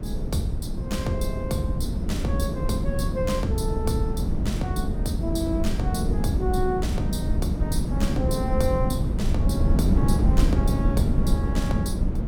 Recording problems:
wind noise; below 180 Hz, SNR -4 dB

